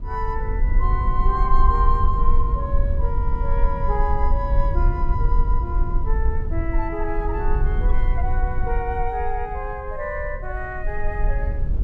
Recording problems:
low-frequency rumble; below 54 Hz, strongest tone 20 Hz, SNR -4 dB

